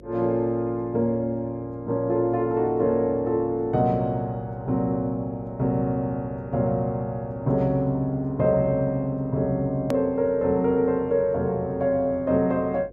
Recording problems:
mains hum; 50 Hz, harmonics up to 550 Hz, SNR 24 dB
edit click; at 10 s

